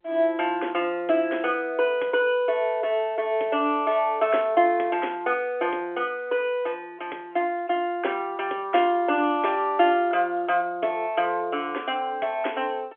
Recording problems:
telephone audio; 300 Hz to 3.4 kHz, G.711

